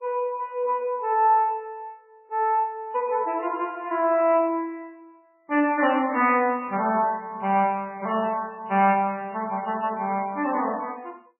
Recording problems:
codec artefacts; MP3, log-spectral distance 2 dB, nothing above 2.4 kHz

